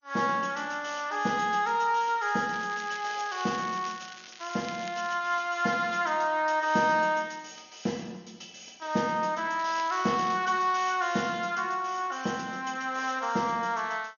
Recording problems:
lossy compression; MP2, log-spectral distance 4 dB, nothing above 6.7 kHz
crackling; from 2.5 to 5 s and at 9.5 s; loose cable, SNR 17 dB

